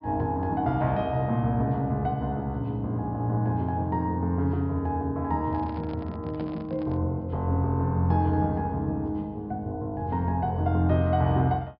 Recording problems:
low-pass filter; nothing above 5.5 kHz
handling noise; from 5.5 to 7 s; peak -11 dB vs average level

